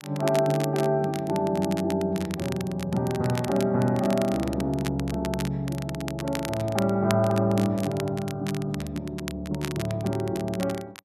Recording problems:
crackle; vinyl, SNR 13 dB

